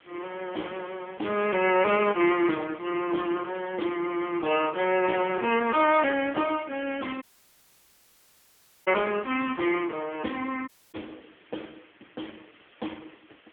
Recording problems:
telephone audio; 240 Hz to 3.3 kHz, AMR-NB
background hiss; SNR 29 dB
dropout; at 7 s for 1.5 s and at 11 s

